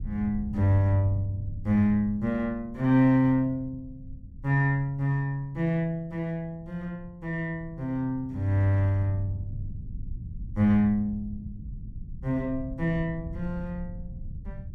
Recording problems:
low-frequency rumble; below 120 Hz, SNR 15 dB

